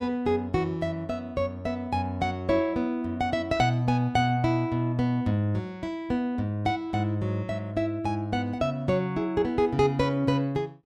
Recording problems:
none

